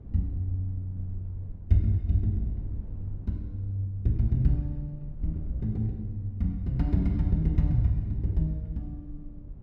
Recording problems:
rumble; below 88 Hz, SNR 14 dB

